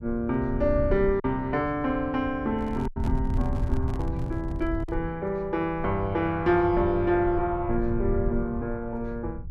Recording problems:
rumble; below 94 Hz, SNR 7 dB
packet loss; 1.7% of the sound replaced, filled with silence
microphone handling noise; from 2.5 to 5 s; peak -10 dB vs average level

